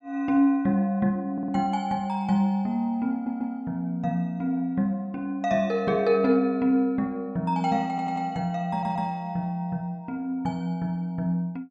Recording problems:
stutter; 4 times, first at 1.5 s

